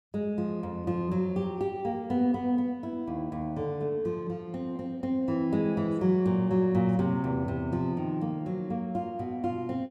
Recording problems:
none

